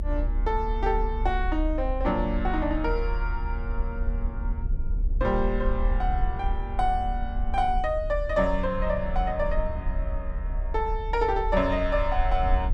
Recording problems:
low-frequency rumble; below 54 Hz, strongest tone 36 Hz, SNR 3 dB

